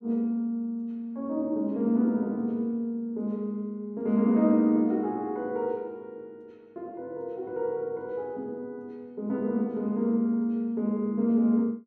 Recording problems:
none

